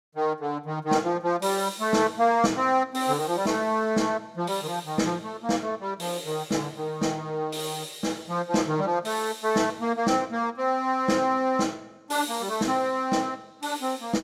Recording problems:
none

